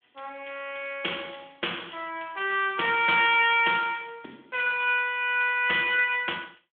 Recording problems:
phone line; 260 Hz to 3.4 kHz, Speex

